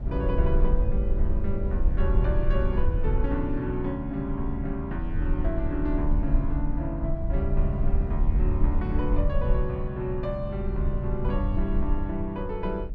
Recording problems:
low-frequency rumble; below 62 Hz, SNR -2 dB

